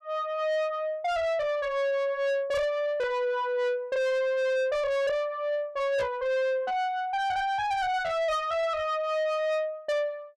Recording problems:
distortion; soft clipping, signal-to-distortion ratio 7 dB

